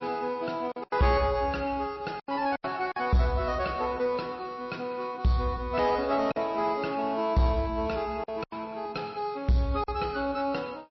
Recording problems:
codec artefacts; MP3, log-spectral distance 2 dB, nothing above 5.5 kHz
distortion; soft clipping, signal-to-distortion ratio 11 dB
packet loss; 5% of the sound replaced, filled with silence

